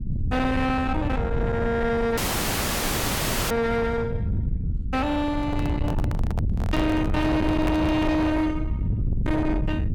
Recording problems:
distortion; soft clipping, signal-to-distortion ratio 8 dB
rumble; below 190 Hz, SNR 3 dB
dropout; at 2 s for 1.5 s
handling noise; from 5.5 to 8.5 s; peak -2 dB vs average level

